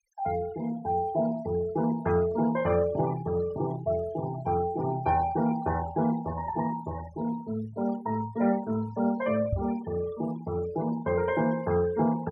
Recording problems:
denoising artefacts; signal-to-artefact ratio 17 dB
knock on the microphone; at 9.5 s; peak +3 dB vs average level

